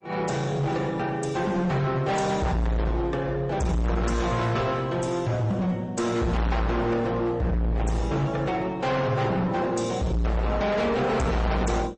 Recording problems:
lossy compression; MP3, then Opus, log-spectral distance 3 dB, nothing above 8.2 kHz
distorted audio; hard clipping, uneven, signal-to-distortion ratio 6 dB

